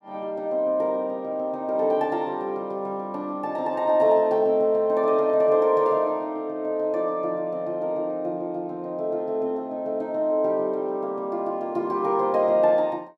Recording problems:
none

